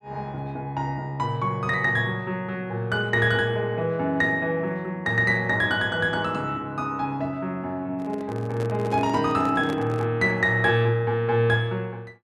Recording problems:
microphone handling noise; from 8 to 10 s; peak -5 dB vs average level

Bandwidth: 12.5 kHz